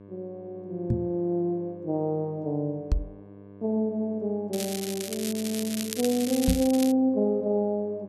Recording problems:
hum; 50 Hz, harmonics up to 1.2 kHz, SNR 20 dB
knock on the microphone; at 1 s, at 3 s and at 6.5 s; peak +6 dB vs average level
crackle; from 4.5 to 7 s; loose cable, SNR 7 dB

